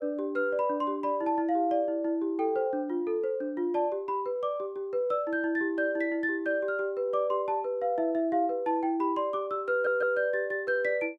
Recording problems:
stutter; at 9.5 s

